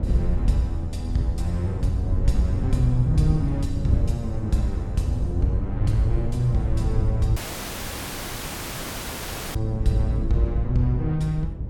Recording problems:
wind on the microphone; below 110 Hz, SNR 2 dB
dropout; at 7.5 s for 2 s

